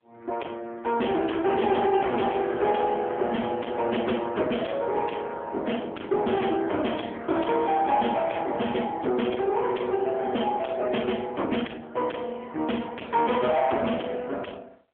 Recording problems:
telephone audio; 220 Hz to 3.4 kHz, AMR-NB
distorted audio; soft clipping, signal-to-distortion ratio 7 dB

